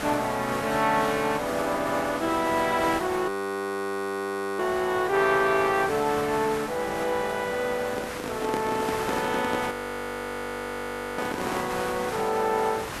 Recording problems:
hiss; SNR 9 dB
frozen audio; at 3.5 s for 1.5 s and at 9.5 s for 1.5 s
microphone handling noise; from 8 to 12 s; peak +1 dB vs average level

